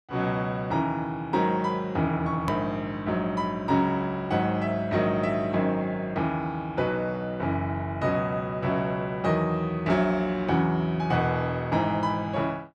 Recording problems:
hard cut with a click; at 2.5 s

